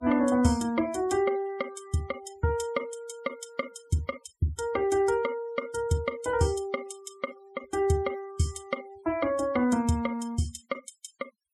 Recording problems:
noise reduction artefacts; signal-to-artefact ratio 22 dB

